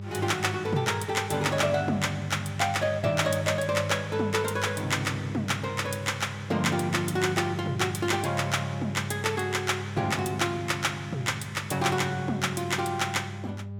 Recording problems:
hum; 50 Hz, harmonics up to 600 Hz, SNR 10 dB

